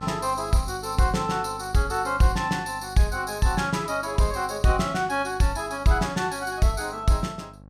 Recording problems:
electrical hum; 50 Hz, harmonics up to 1.4 kHz, SNR 20 dB

